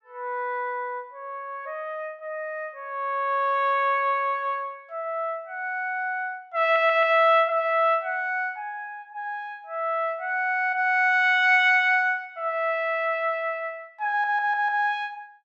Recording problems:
audio stuttering; at 6.5 s and at 14 s

